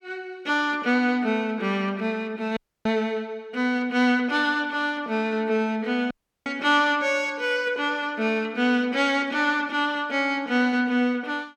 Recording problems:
dropout; at 2.5 s and at 6 s

